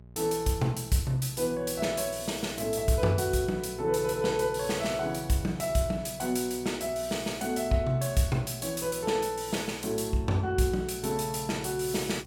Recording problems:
electrical hum; 60 Hz, harmonics up to 840 Hz, SNR 20 dB

